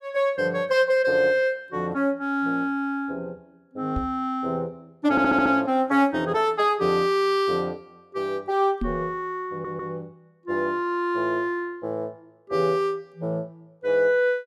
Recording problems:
microphone bump; at 4 s and at 9 s; peak -1 dB vs average level
audio stuttering; at 5 s and at 9.5 s

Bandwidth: 14.5 kHz